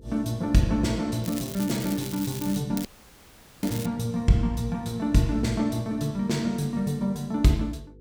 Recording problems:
electrical hum; 50 Hz, harmonics up to 500 Hz, SNR 25 dB
crackle; from 1 to 2.5 s and from 3 to 4 s; loose cable, SNR 12 dB
audio cutting out; at 3 s for 1 s

